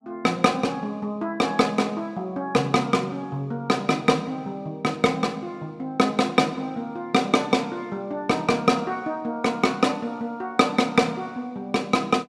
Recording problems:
none

